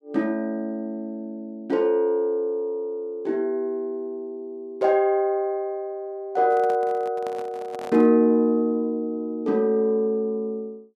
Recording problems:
microphone handling noise; from 6.5 to 8 s; peak -10 dB vs average level

